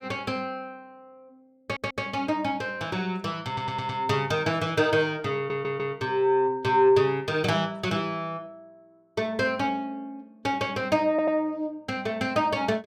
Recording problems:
audio stuttering; 4 times, first at 1.5 s

